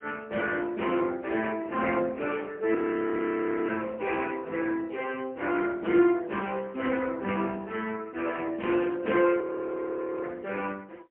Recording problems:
phone line; 260 Hz to 3.1 kHz, AMR-NB, then MP3
frozen audio; at 3 s for 1 s and at 9.5 s for 1 s

